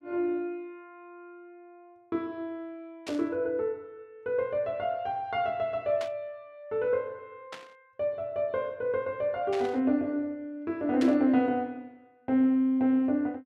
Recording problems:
static burst; 5 times, first at 3 s; peak -5 dB vs average level

